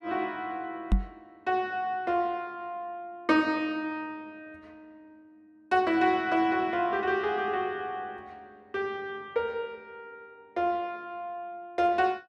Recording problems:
microphone bump; at 1 s; peak +8 dB vs average level

